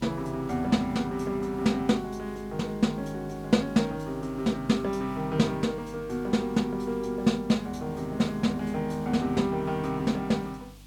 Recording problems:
hum; 50 Hz, harmonics up to 300 Hz, SNR 20 dB
hiss; SNR 27 dB

